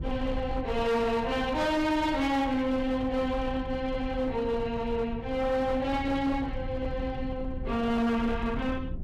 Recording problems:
distortion; hard clipping, signal-to-distortion ratio 10 dB
low-frequency rumble; below 120 Hz, SNR 10 dB

